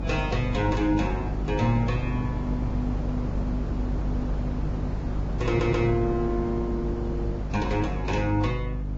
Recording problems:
lossy compression; Vorbis, log-spectral distance 2 dB, nothing above 7.3 kHz
electrical hum; 50 Hz, harmonics up to 300 Hz, SNR 4 dB
wind on the microphone; below 390 Hz, SNR 6 dB
audio stuttering; at 5.5 s

